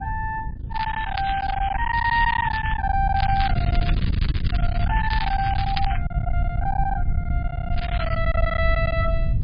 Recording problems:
lossy compression; MP3, log-spectral distance 4 dB, nothing above 4 kHz
rumble; below 90 Hz, SNR 2 dB
wind on the microphone; below 200 Hz, SNR 11 dB
packet loss; 14% of the sound replaced, filled with silence
crackling; from 1 to 3 s, from 3 to 6 s and at 8 s; loose cable, SNR 10 dB

